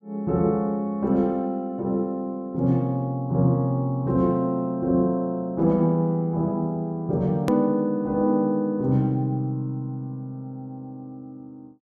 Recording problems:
hard cut with a click; at 7.5 s

